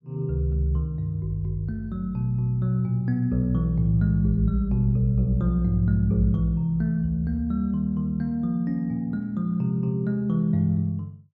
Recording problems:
none

